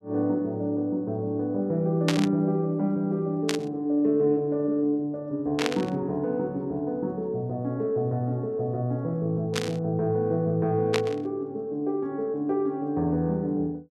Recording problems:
static burst; 5 times, first at 2 s; peak +4 dB vs average level

